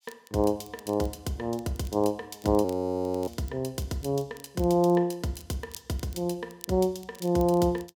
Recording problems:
crackling; vinyl, SNR 23 dB
audio freezing; at 2.5 s for 0.5 s

